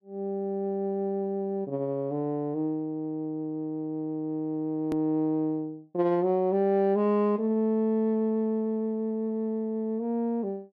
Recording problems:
hard cut with a click; at 5 s

